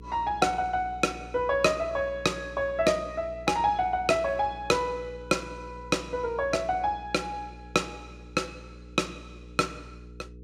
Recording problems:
mains hum; 60 Hz, harmonics up to 480 Hz, SNR 18 dB

